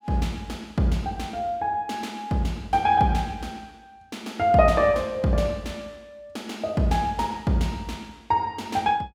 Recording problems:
none

